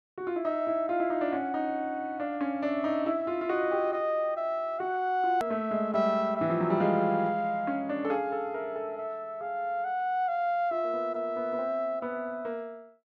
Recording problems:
edit click; at 5.5 s

